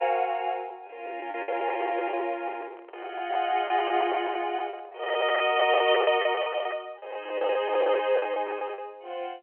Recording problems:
telephone audio; 320 Hz to 3.2 kHz, G.711
lost packets; 14% of the sound replaced, filled with the last packet
handling noise; from 2 to 6 s; peak -10 dB vs average level

